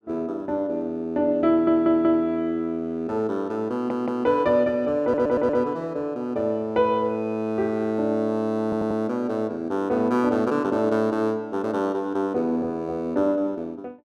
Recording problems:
audio stuttering; 4 times, first at 1.5 s

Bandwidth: 14 kHz